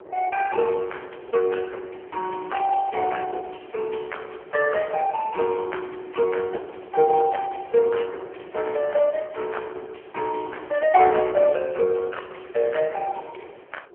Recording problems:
phone line; 320 Hz to 3.1 kHz, AMR-NB
wind noise; below 650 Hz, SNR 20 dB

